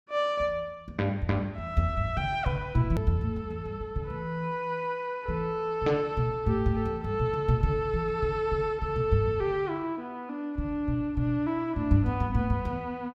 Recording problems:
hard cut with a click; at 3 s

